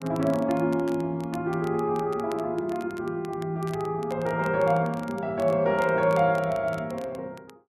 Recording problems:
crackling; vinyl, SNR 23 dB

